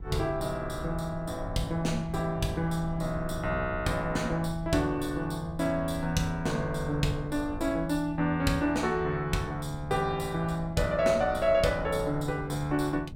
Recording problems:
wind noise; below 110 Hz, SNR 13 dB

